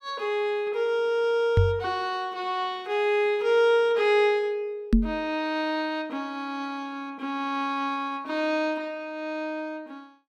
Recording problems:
microphone bump; at 1.5 s and at 5 s; peak +9 dB vs average level

